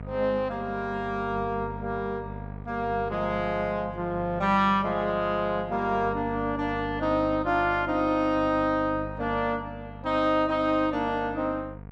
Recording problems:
hum; 50 Hz, harmonics up to 1.2 kHz, SNR 14 dB

